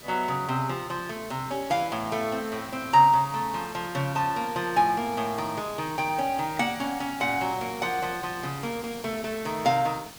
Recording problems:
background hiss; SNR 15 dB

